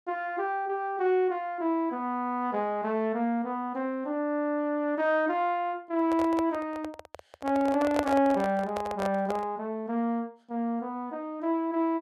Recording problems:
microphone handling noise; from 6 to 9.5 s; peak +4 dB vs average level

